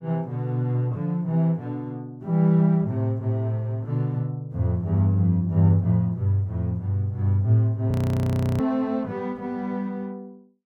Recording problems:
frozen audio; at 8 s for 0.5 s

